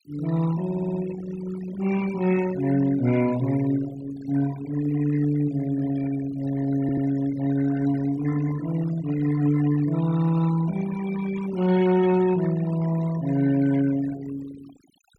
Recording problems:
denoising artefacts; signal-to-artefact ratio 15 dB
stutter; at 0.5 s and at 7 s

